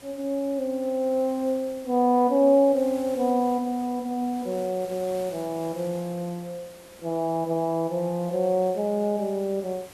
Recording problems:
background hiss; slope -3 dB per octave, SNR 22 dB

